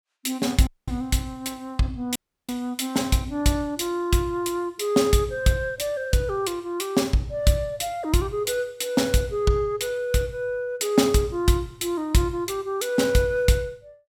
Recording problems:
audio cutting out; at 0.5 s and at 2 s

